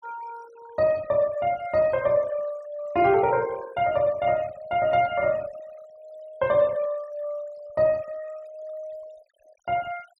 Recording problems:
noise reduction artefacts; signal-to-artefact ratio 24 dB

